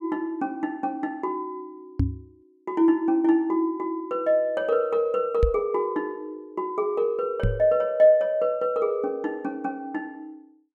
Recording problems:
microphone bump; at 2 s, at 5.5 s and at 7.5 s; peak +5 dB vs average level

